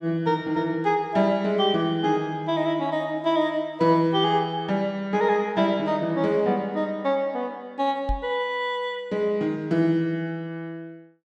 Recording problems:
knock on the microphone; at 8 s; peak -1 dB vs average level

